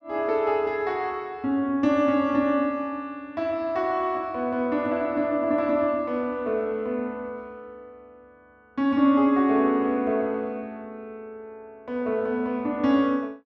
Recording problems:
none

